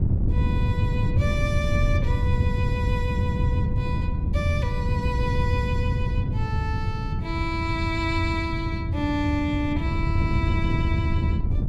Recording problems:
wind noise; below 130 Hz, SNR -5 dB

